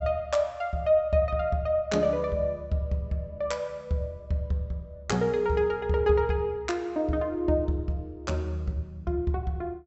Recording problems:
low-pass filter; nothing above 7.7 kHz

